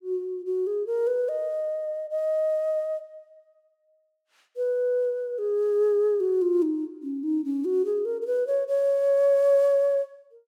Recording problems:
none

